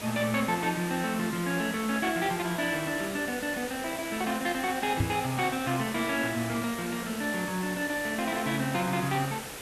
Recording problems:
background hiss; slope -3 dB per octave, SNR 9 dB
knock on the microphone; at 5 s; peak +6 dB vs average level

